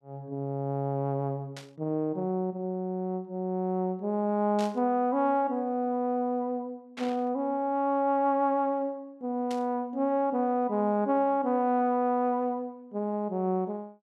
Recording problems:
burst of static; 4 times, first at 1.5 s; peak -8 dB vs average level

